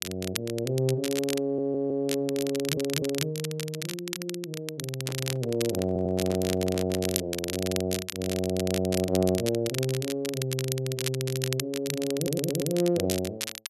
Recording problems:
crackling; vinyl, SNR 6 dB
audio stuttering; 4 times, first at 1.5 s
microphone handling noise; from 5 to 7 s; peak -6 dB vs average level

